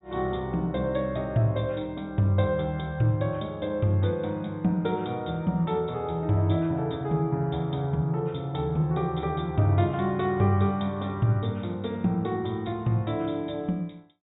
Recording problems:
low-pass filter; nothing above 4 kHz

